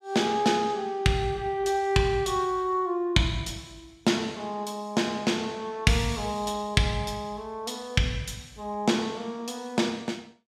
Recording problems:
none

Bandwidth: 15.5 kHz